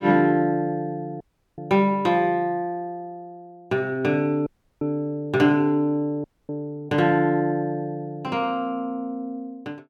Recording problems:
audio cutting out; at 1 s, at 4.5 s and at 6 s

